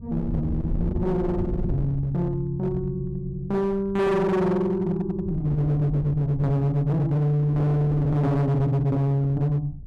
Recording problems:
distortion; hard clipping, signal-to-distortion ratio 7 dB
wind noise; below 130 Hz, SNR 11 dB

